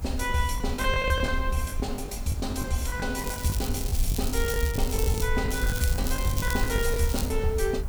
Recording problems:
background hiss; SNR 16 dB
low-frequency rumble; below 66 Hz, SNR 4 dB
packet loss; 13% of the sound replaced, filled with the last packet
crackle; from 3 to 5.5 s and from 5.5 to 7.5 s; loose cable, SNR 7 dB

